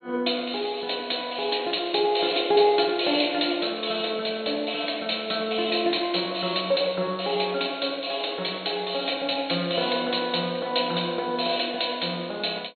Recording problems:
treble cut off; nothing above 4.3 kHz

